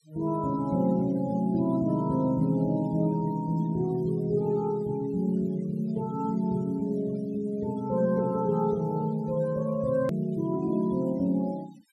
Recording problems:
denoising artefacts; signal-to-artefact ratio 25 dB
click at an edit; at 10 s

